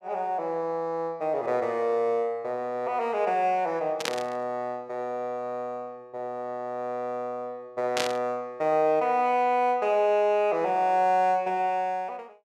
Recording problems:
static burst; at 4 s and at 8 s; peak +2 dB vs average level

